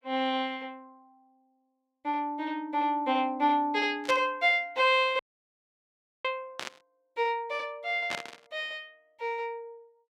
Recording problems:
burst of static; at 4 s, at 6.5 s and at 8 s; peak -1 dB vs average level
dropout; at 5 s for 1 s

